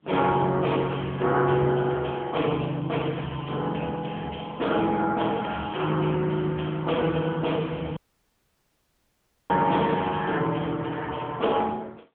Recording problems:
phone line; 220 Hz to 3.3 kHz, AMR-NB
dropout; at 8 s for 1.5 s

